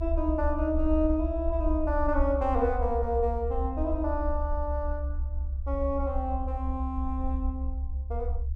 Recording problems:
low-frequency rumble; below 70 Hz, SNR 2 dB

